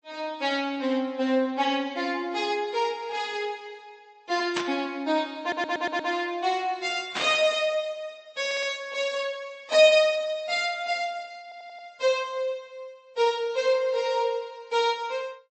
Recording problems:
lossy compression; MP3, log-spectral distance 2 dB, nothing above 8 kHz
static burst; at 4.5 s and at 7 s; peak +1 dB vs average level
stutter; at 5.5 s, at 8.5 s and at 11 s

